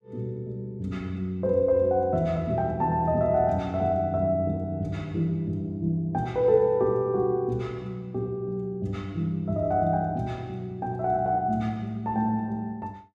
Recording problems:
none

